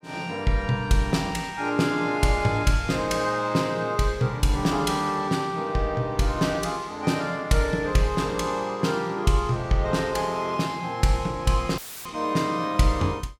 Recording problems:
audio cutting out; at 12 s; filled with static

